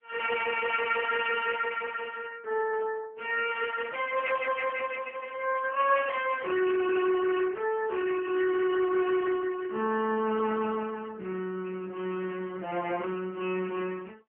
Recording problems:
phone line; 240 Hz to 2.8 kHz, AMR-NB

